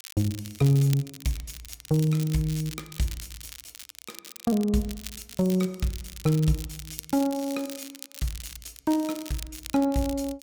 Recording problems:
crackling; vinyl, SNR 14 dB

